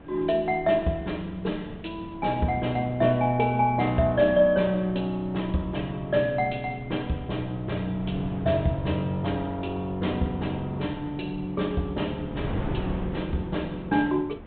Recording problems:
low-pass filter; nothing above 4 kHz
wind noise; below 360 Hz, SNR 14 dB

